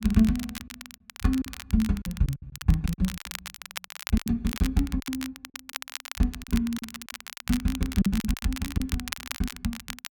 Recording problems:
crackling; vinyl, SNR 10 dB
lost packets; 14% of the sound replaced, filled with silence

